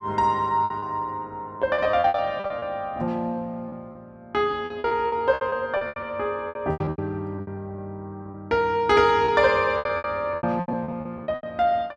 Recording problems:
lost packets; 16% of the sound replaced, filled with repeated pitch periods

